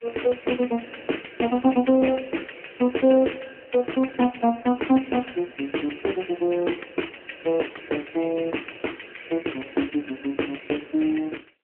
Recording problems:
phone line; 240 Hz to 3.1 kHz, AMR-NB

